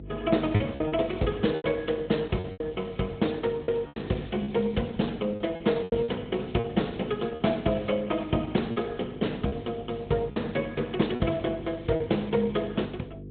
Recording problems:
treble missing; nothing above 3.8 kHz
codec artefacts; Opus, log-spectral distance 4 dB
mains hum; 50 Hz, harmonics up to 500 Hz, SNR 13 dB
lost packets; 7% of the sound replaced, filled with repeated pitch periods

